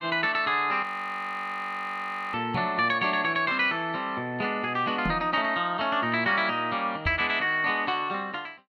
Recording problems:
frozen audio; at 1 s for 1.5 s
knock on the microphone; at 2.5 s, at 5 s and at 7 s; peak -2 dB vs average level

